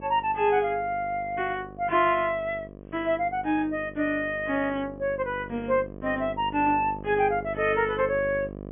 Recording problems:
treble missing; nothing above 3.4 kHz
electrical hum; 50 Hz, harmonics up to 1.3 kHz, SNR 15 dB

